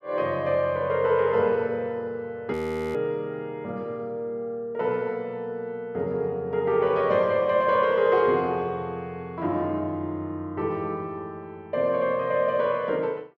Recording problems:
frozen audio; at 2.5 s

